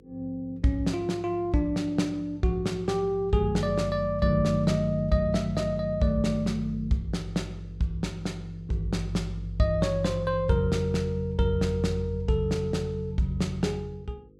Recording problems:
hum; 50 Hz, harmonics up to 500 Hz, SNR 28 dB

